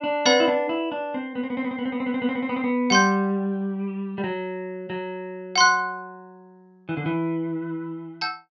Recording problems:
treble cut off; nothing above 6.8 kHz

